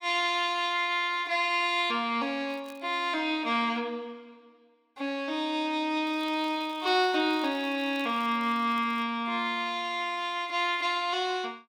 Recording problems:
crackle; at 2.5 s and from 6 to 9 s; loose cable, SNR 27 dB

